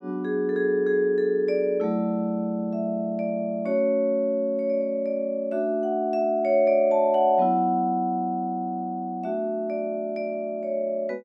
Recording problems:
none

